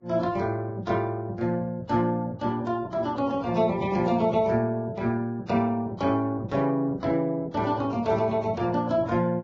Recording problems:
lossy compression; AAC, then Vorbis, log-spectral distance 2 dB

